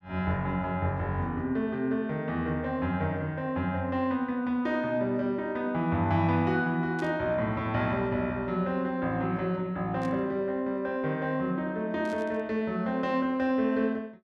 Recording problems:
burst of static; at 7 s, at 10 s and at 12 s; peak -14 dB vs average level

